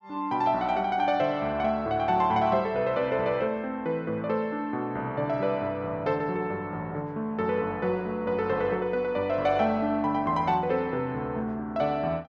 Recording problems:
none

